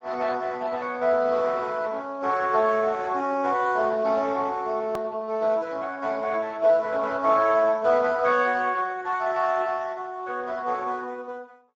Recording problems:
lossy compression; Speex, log-spectral distance 4 dB
click at an edit; at 5 s

